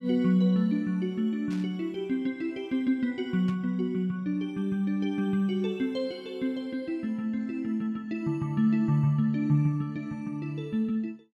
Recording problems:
burst of static; at 1.5 s and at 3.5 s; peak -15 dB vs average level

